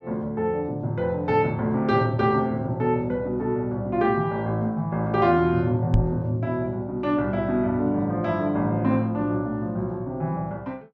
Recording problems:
microphone thump; at 6 s; peak +8 dB vs average level

